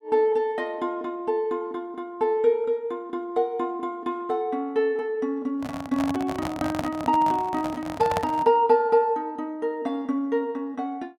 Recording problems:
handling noise; from 5.5 to 8.5 s; peak +2 dB vs average level

